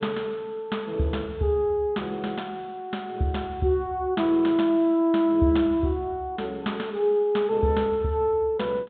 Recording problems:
treble missing; nothing above 4 kHz

